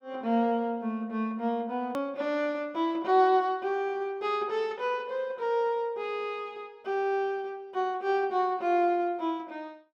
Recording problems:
click at an edit; at 2 s

